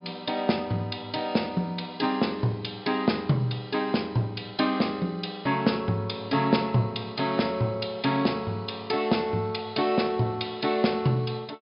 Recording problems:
treble missing; nothing above 5.5 kHz

